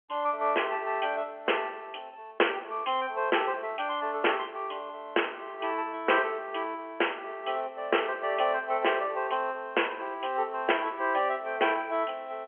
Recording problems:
phone line; 300 Hz to 3.3 kHz, G.711

